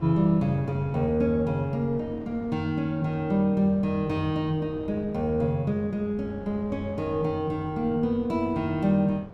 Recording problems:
wind noise; below 480 Hz, SNR 18 dB

